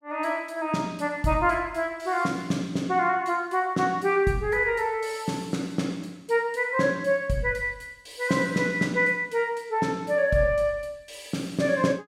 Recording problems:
none

